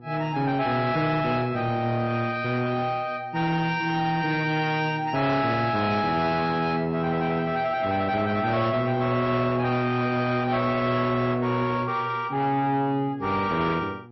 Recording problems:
lossy codec; MP3, log-spectral distance 2 dB, nothing above 5.5 kHz
distorted audio; soft clipping, signal-to-distortion ratio 11 dB
hum; 60 Hz, harmonics up to 960 Hz, SNR 22 dB

